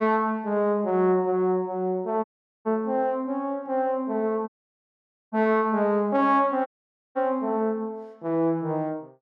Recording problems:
audio cutting out; at 2 s, at 4.5 s for 1 s and at 6.5 s

